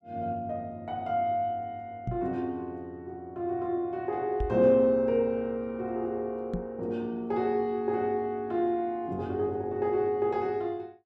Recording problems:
microphone thump; at 2 s, at 4.5 s and at 6.5 s; peak 0 dB vs average level

